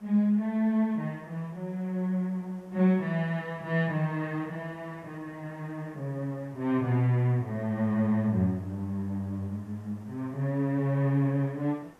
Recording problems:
hiss; slope -7 dB per octave, SNR 28 dB

